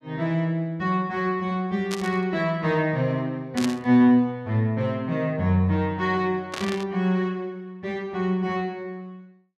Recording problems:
burst of static; at 2 s, at 3.5 s and at 6.5 s; peak -3 dB vs average level

